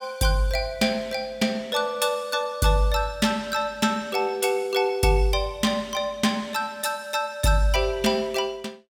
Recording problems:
none

